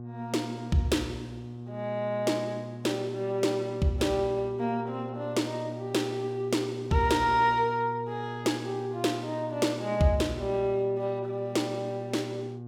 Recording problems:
electrical hum; 60 Hz, harmonics up to 840 Hz, SNR 11 dB

